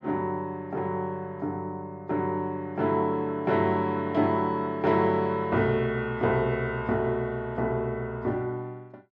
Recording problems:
none

